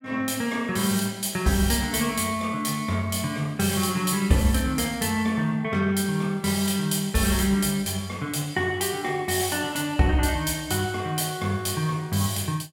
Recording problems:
none

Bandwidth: 18 kHz